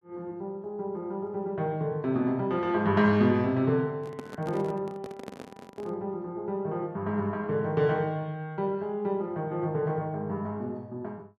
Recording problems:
handling noise; from 4 to 6 s; peak -6 dB vs average level

